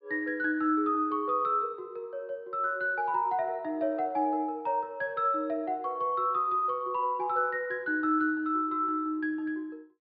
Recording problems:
treble missing; nothing above 5 kHz

